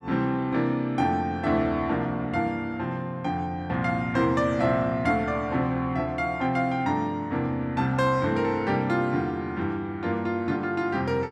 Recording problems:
none

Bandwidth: 12.5 kHz